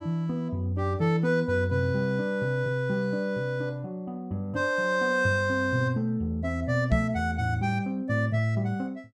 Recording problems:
microphone thump; at 7 s; peak +5 dB vs average level

